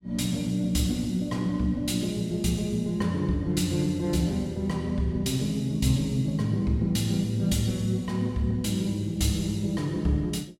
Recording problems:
none

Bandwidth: 16 kHz